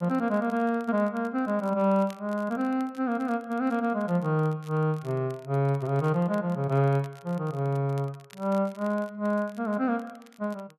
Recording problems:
crackling; vinyl, SNR 28 dB

